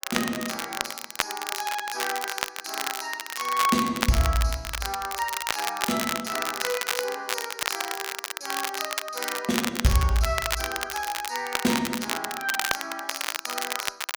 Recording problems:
crackle; vinyl, SNR 1 dB

